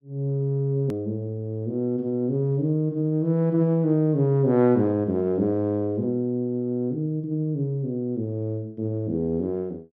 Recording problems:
hard cut with a click; at 1 s

